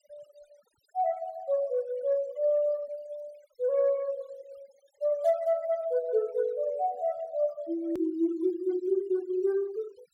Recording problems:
noise reduction artefacts; signal-to-artefact ratio 25 dB
hard cut with a click; at 8 s

